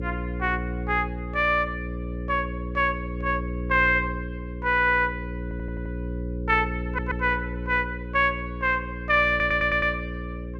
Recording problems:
electrical hum; 60 Hz, harmonics up to 540 Hz, SNR 8 dB
stutter; at 5.5 s, at 7 s and at 9.5 s

